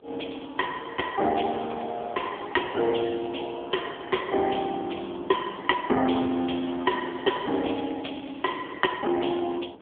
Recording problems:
telephone audio; 220 Hz to 3.5 kHz, AMR-NB
wind on the microphone; below 550 Hz, SNR 22 dB
crackle; from 1.5 to 3.5 s and from 6 to 8.5 s; loose cable, SNR 24 dB

